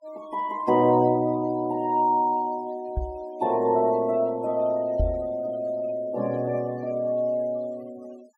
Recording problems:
denoising artefacts; signal-to-artefact ratio 26 dB
microphone bump; at 3 s and at 5 s; peak +2 dB vs average level

